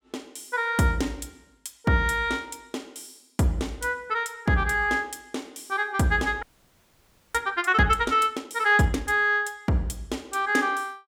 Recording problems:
frozen audio; at 6.5 s for 1 s

